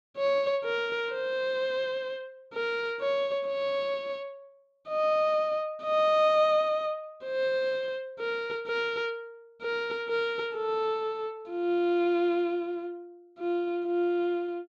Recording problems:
none

